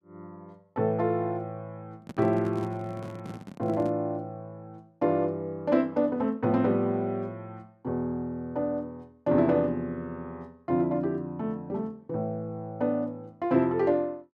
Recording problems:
microphone handling noise; from 2 to 4 s; peak -6 dB vs average level

